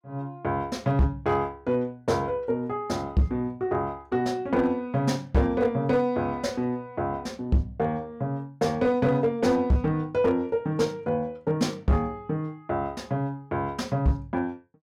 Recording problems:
distorted audio; hard clipping, uneven, signal-to-distortion ratio 12 dB

